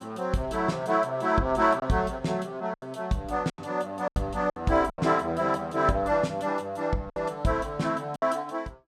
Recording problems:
packet loss; 6% of the sound replaced, filled with silence

